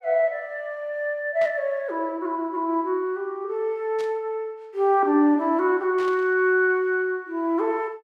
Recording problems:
burst of static; at 1.5 s, at 4 s and at 6 s; peak -13 dB vs average level

